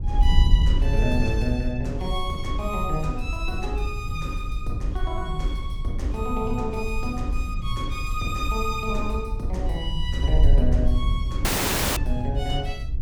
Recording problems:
wind on the microphone; below 64 Hz, SNR -2 dB
audio cutting out; at 11 s for 0.5 s

